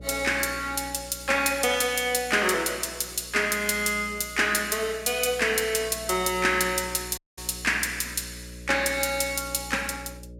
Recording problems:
hum; 60 Hz, harmonics up to 600 Hz, SNR 20 dB
dropout; at 7 s

